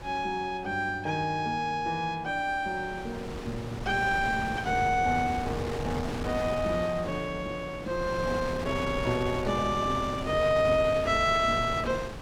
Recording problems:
wind on the microphone; below 890 Hz, SNR 9 dB

